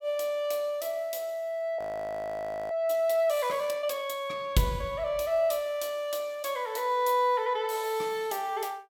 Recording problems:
frozen audio; at 2 s for 1 s

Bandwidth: 17 kHz